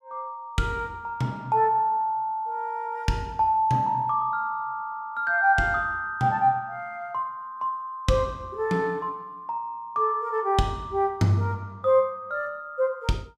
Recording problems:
none

